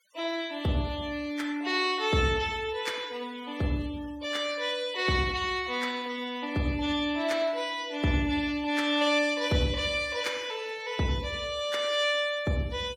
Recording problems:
noise reduction artefacts; signal-to-artefact ratio 20 dB

